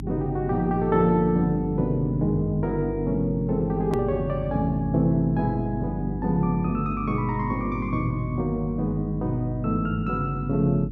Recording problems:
hum; 50 Hz, harmonics up to 300 Hz, SNR 9 dB
hard cut with a click; at 4 s

